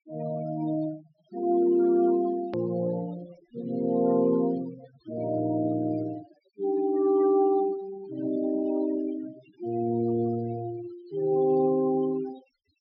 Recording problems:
low-pass filter; nothing above 5.5 kHz
denoising artefacts; signal-to-artefact ratio 18 dB
click at an edit; at 2.5 s

